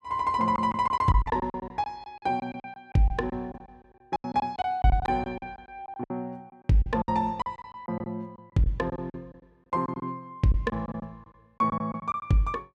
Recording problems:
packet loss; 15% of the sound replaced, filled with silence

